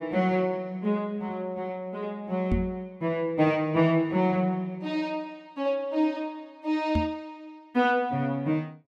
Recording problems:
microphone bump; at 2.5 s and at 7 s; peak +4 dB vs average level

